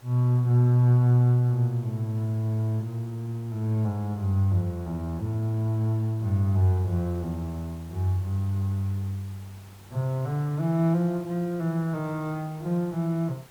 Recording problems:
background hiss; SNR 27 dB

